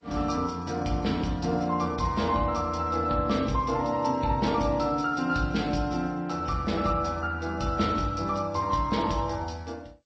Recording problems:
codec artefacts; MP3, then G.722, log-spectral distance 3 dB, nothing above 7.6 kHz

